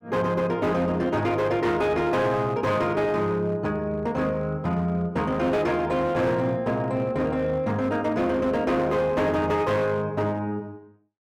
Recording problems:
distorted audio; hard clipping, uneven, signal-to-distortion ratio 11 dB

